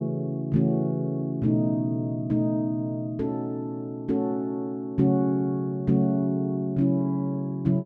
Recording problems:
none

